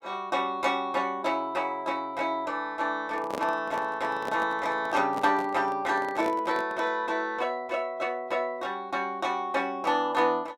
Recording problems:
handling noise; from 3 to 7 s; peak -2 dB vs average level

